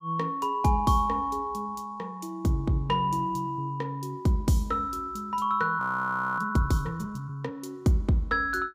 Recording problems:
frozen audio; at 6 s for 0.5 s

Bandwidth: 15.5 kHz